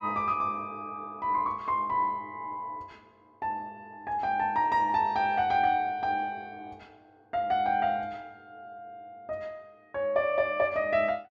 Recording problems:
none

